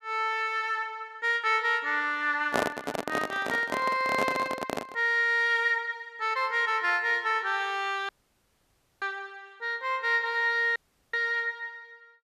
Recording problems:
microphone handling noise; from 2.5 to 5 s; peak +3 dB vs average level
dropout; at 8 s for 1 s and at 11 s

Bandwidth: 14.5 kHz